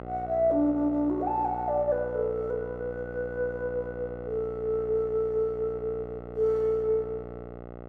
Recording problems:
electrical hum; 60 Hz, harmonics up to 1.5 kHz, SNR 12 dB

